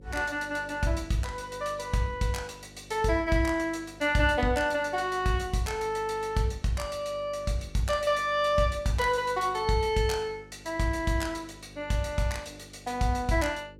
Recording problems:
electrical hum; 50 Hz, harmonics up to 550 Hz, SNR 22 dB

